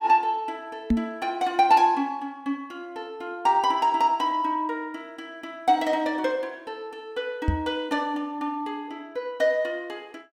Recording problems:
microphone bump; at 1 s and at 7.5 s; peak +7 dB vs average level

